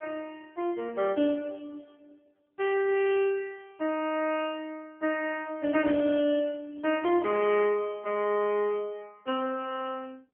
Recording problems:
phone line; 220 Hz to 3.2 kHz, AMR-NB

